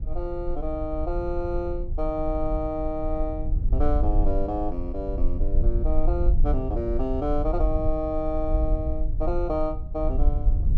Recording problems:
rumble; below 52 Hz, strongest tone 20 Hz, SNR -1 dB

